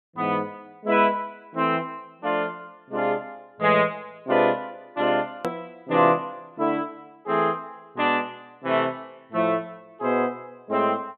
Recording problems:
treble missing; nothing above 4 kHz
hard cut with a click; at 5.5 s

